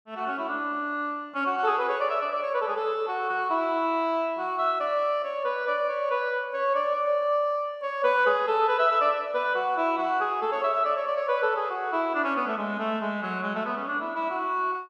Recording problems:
none

